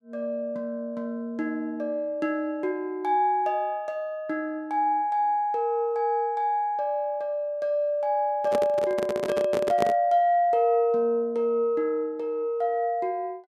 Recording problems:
handling noise; from 8.5 to 10 s; peak +2 dB vs average level

